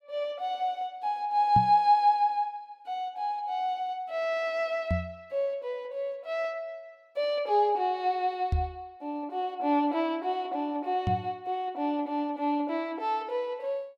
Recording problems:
knock on the microphone; 4 times, first at 1.5 s; peak +4 dB vs average level

